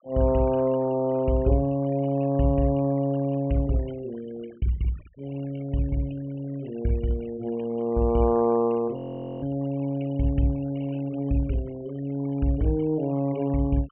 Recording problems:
low-pass filter; nothing above 3.1 kHz
noise reduction artefacts; signal-to-artefact ratio 25 dB
audio freezing; at 9 s

